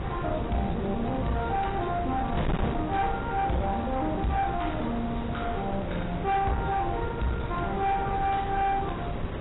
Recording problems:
lossy compression; AAC, log-spectral distance 3 dB, nothing above 3.8 kHz
distortion; soft clipping, signal-to-distortion ratio 10 dB
wind on the microphone; below 510 Hz, SNR 4 dB

